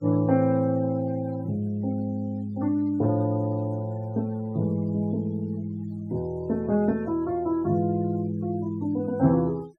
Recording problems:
noise reduction artefacts; signal-to-artefact ratio 27 dB

